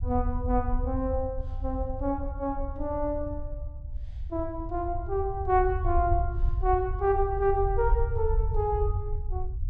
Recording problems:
rumble; below 76 Hz, SNR 4 dB

